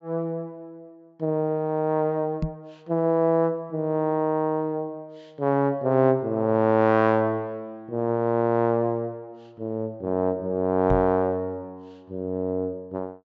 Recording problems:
treble missing; nothing above 8 kHz
microphone thump; at 2.5 s and at 11 s; peak +1 dB vs average level

